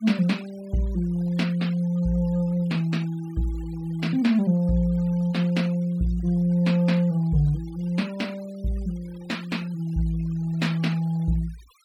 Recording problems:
noise reduction artefacts; signal-to-artefact ratio 24 dB

